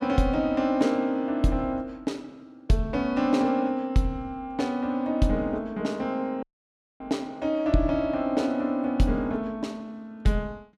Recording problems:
dropout; at 6.5 s for 0.5 s

